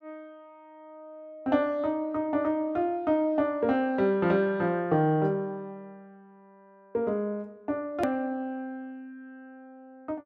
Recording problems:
edit click; at 8 s

